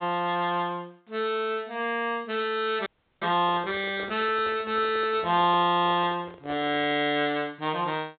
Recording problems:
low-pass filter; nothing above 4 kHz
audio freezing; at 3 s
microphone handling noise; from 3.5 to 7 s; peak -11 dB vs average level

